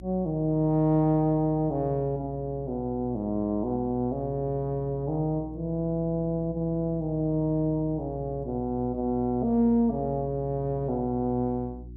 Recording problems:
hum; 60 Hz, harmonics up to 360 Hz, SNR 16 dB

